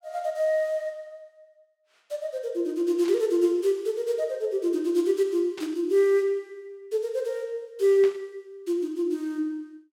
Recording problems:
static burst; at 3 s, at 5.5 s and at 8 s; peak -10 dB vs average level

